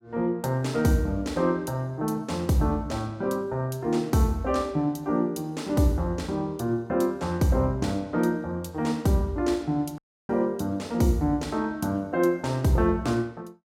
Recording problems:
audio cutting out; at 10 s

